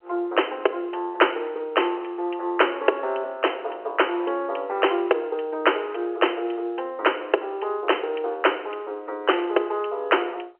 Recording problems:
telephone audio; 320 Hz to 3.1 kHz, G.711

